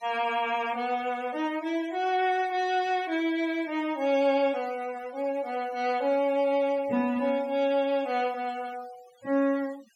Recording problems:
denoising artefacts; signal-to-artefact ratio 22 dB

